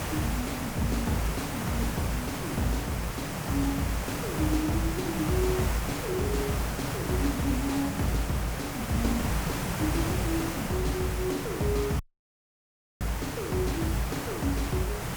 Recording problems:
background hiss; slope -4 dB per octave, SNR 2 dB
audio cutting out; at 12 s for 1 s

